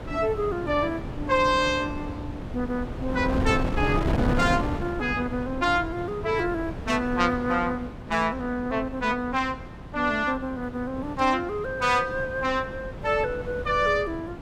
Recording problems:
wind on the microphone; below 390 Hz, SNR 8 dB

